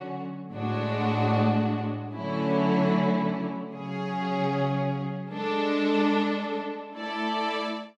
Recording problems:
none

